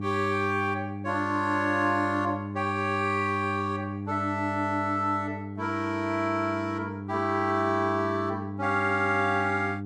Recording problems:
hum; 50 Hz, harmonics up to 800 Hz, SNR 8 dB

